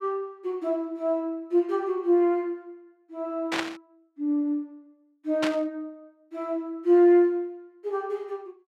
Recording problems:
static burst; at 3.5 s and at 5.5 s; peak +2 dB vs average level

